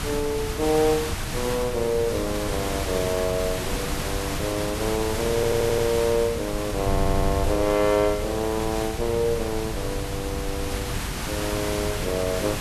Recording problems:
background hiss; slope -3 dB per octave, SNR 5 dB
wind noise; below 110 Hz, SNR 8 dB
audio stuttering; at 5.5 s and at 7 s

